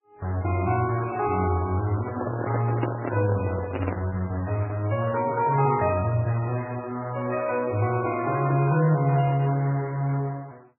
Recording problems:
lossy compression; MP3, then Vorbis, log-spectral distance 3 dB, nothing above 2.5 kHz
handling noise; from 2 to 4 s; peak +1 dB vs average level

